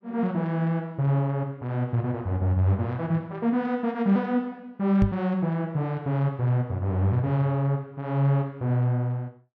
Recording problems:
microphone thump; at 5 s; peak +5 dB vs average level

